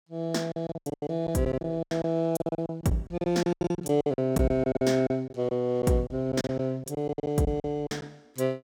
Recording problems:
lost packets; 19% of the sound replaced, filled with silence

